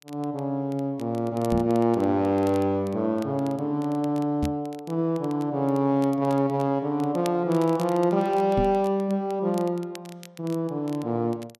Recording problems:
crackling; vinyl, SNR 24 dB
microphone thump; at 1.5 s, at 4.5 s and at 8.5 s; peak 0 dB vs average level

